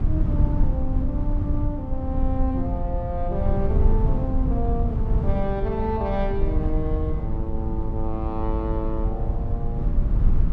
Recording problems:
low-frequency rumble; below 90 Hz, SNR -4 dB

